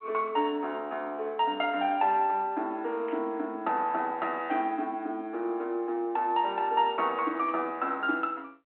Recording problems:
phone line; 240 Hz to 3.5 kHz, G.726
static burst; at 3 s, at 4.5 s and at 7.5 s; peak -14 dB vs average level

